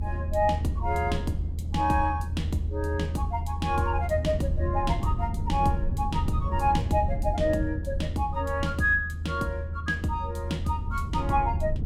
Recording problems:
low-frequency rumble; below 90 Hz, SNR 3 dB

